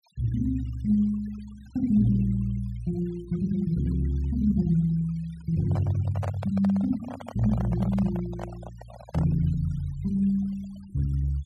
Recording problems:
denoising artefacts; signal-to-artefact ratio 25 dB
handling noise; from 5.5 to 9.5 s; peak -5 dB vs average level

